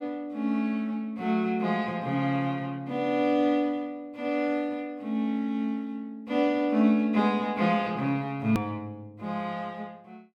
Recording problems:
edit click; at 8.5 s

